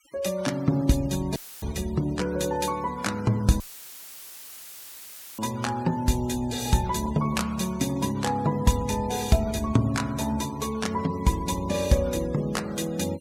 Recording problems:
denoising artefacts; signal-to-artefact ratio 20 dB
dropout; at 1.5 s and at 3.5 s for 2 s; filled with static

